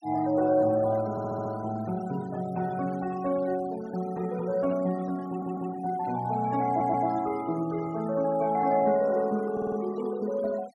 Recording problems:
noise reduction artefacts; signal-to-artefact ratio 20 dB
stutter; 4 times, first at 1 s

